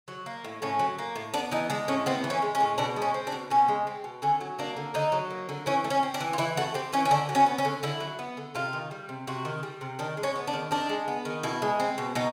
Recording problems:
none

